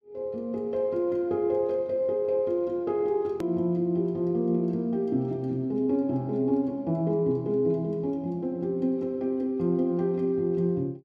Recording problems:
edit click; at 3.5 s

